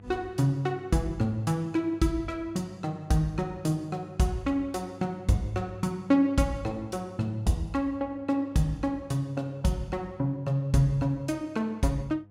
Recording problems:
hum; 50 Hz, harmonics up to 700 Hz, SNR 23 dB

